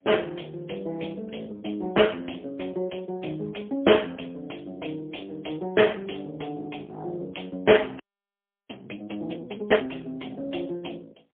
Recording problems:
telephone audio; 280 Hz to 3.3 kHz, AMR-NB, then MP3
frozen audio; at 8 s for 0.5 s

